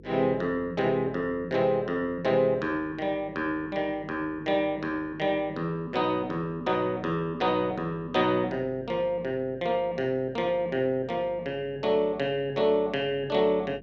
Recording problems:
electrical hum; 50 Hz, harmonics up to 500 Hz, SNR 23 dB

